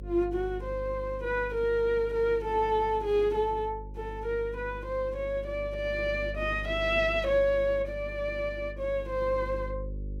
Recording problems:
hum; 50 Hz, harmonics up to 550 Hz, SNR 12 dB

